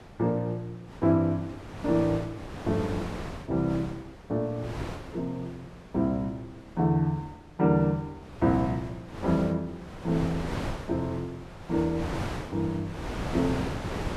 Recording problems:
wind on the microphone; below 880 Hz, SNR 9 dB

